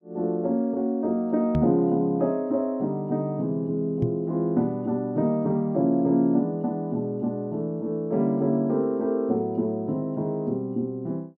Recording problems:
knock on the microphone; at 1.5 s and at 4 s; peak +3 dB vs average level

